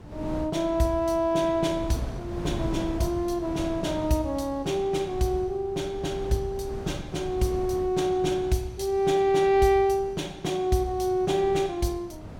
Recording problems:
wind noise; below 310 Hz, SNR 13 dB

